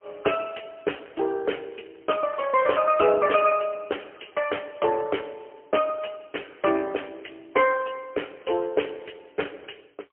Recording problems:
phone line; 300 Hz to 3.2 kHz, AMR-NB, then MP3

